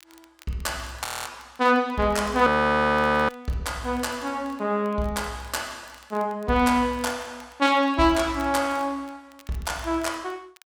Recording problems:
crackle; vinyl, SNR 29 dB
audio freezing; at 1 s and at 2.5 s for 1 s

